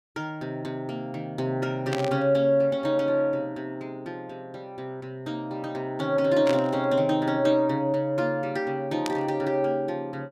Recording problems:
static burst; at 2 s, at 6.5 s and at 9 s; peak -2 dB vs average level

